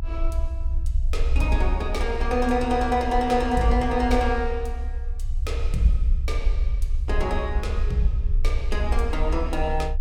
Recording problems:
rumble; below 64 Hz, strongest tone 26 Hz, SNR 2 dB

